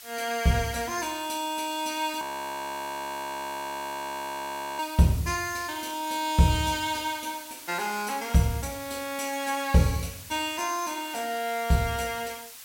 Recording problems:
background hiss; slope +3 dB per octave, SNR 14 dB
audio freezing; at 2 s for 2.5 s

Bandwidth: 16.5 kHz